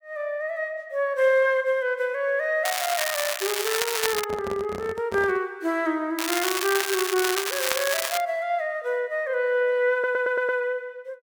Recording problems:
crackle; from 2.5 to 4 s and from 6 to 8 s; loose cable, SNR 2 dB
microphone handling noise; from 4 to 5.5 s; peak -4 dB vs average level
audio stuttering; at 10 s

